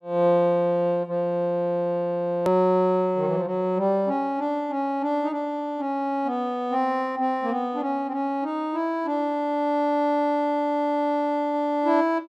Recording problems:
hard cut with a click; at 2.5 s

